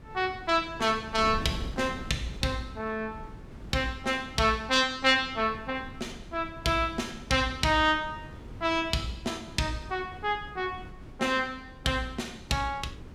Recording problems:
wind noise; below 280 Hz, SNR 16 dB

